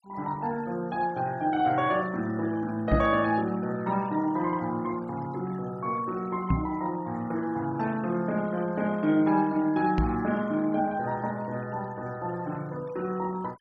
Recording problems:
denoising artefacts; signal-to-artefact ratio 23 dB
knock on the microphone; at 3 s, at 6.5 s and at 10 s; peak +6 dB vs average level

